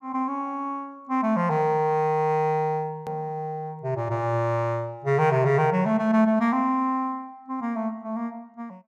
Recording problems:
hard cut with a click; at 3 s

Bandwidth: 15 kHz